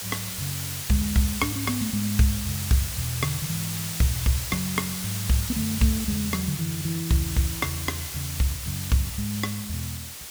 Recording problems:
hiss; slope +1 dB per octave, SNR 4 dB

